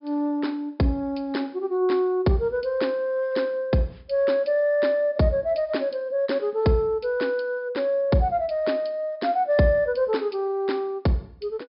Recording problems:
treble missing; nothing above 5.5 kHz

